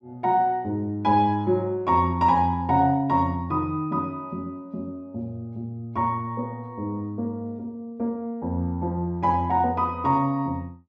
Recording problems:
none

